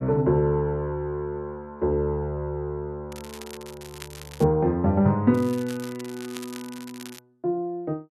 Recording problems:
crackle; from 3 to 4.5 s and from 5.5 to 7 s; loose cable, SNR 18 dB

